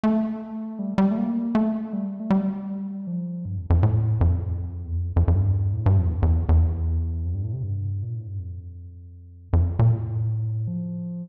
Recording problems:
none

